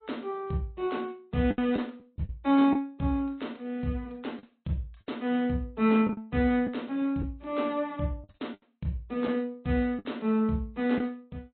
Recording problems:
low-pass filter; nothing above 4 kHz
codec artefacts; MP3, then MP3, log-spectral distance 2 dB
packet loss; 5% of the sound replaced, filled with the last packet

